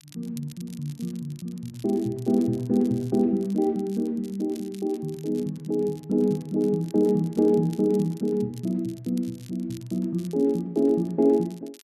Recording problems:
crackling; vinyl, SNR 25 dB

